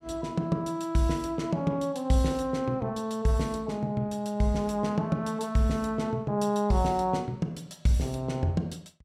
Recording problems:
none

